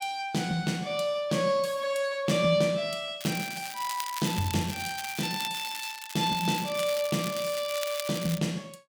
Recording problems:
crackle; from 3 s on; loose cable, SNR 9 dB

